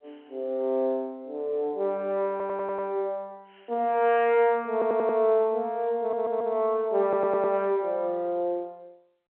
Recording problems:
telephone audio; 240 Hz to 3.3 kHz, G.711
audio stuttering; 4 times, first at 2.5 s

